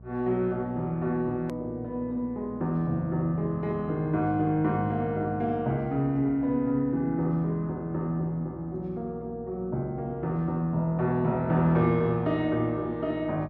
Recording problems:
hum; 60 Hz, harmonics up to 660 Hz, SNR 21 dB
edit click; at 1.5 s

